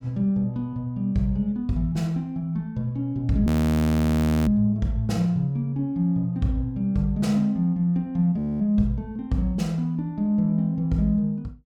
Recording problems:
frozen audio; at 3.5 s for 1 s and at 8.5 s

